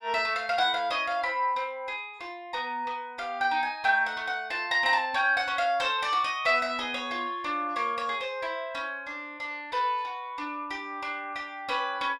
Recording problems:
none

